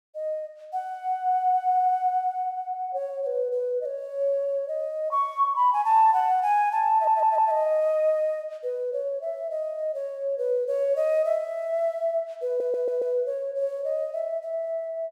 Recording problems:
stutter; at 1.5 s, at 7 s and at 12 s

